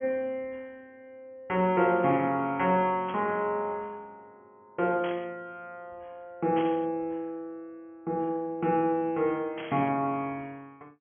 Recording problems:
treble missing; nothing above 3.3 kHz
static burst; 4 times, first at 3 s; peak -8 dB vs average level

